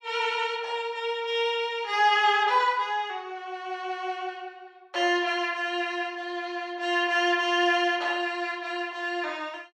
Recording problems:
none

